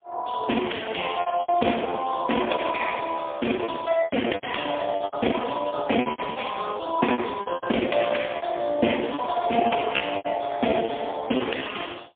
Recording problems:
telephone audio; 170 Hz to 3.4 kHz, AMR-NB, then MP3
lost packets; 12% of the sound replaced, filled with repeated pitch periods

